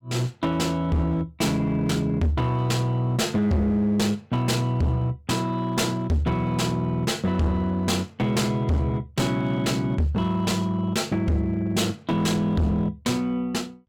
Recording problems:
distortion; hard clipping, uneven, signal-to-distortion ratio 7 dB

